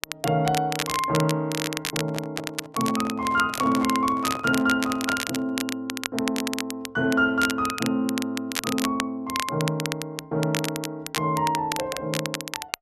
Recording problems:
crackling; vinyl, SNR 6 dB
microphone handling noise; from 2 to 5.5 s; peak -6 dB vs average level

